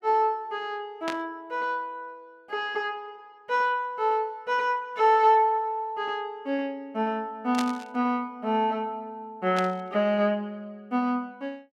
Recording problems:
static burst; at 1 s, at 7.5 s and at 9.5 s; peak -2 dB vs average level

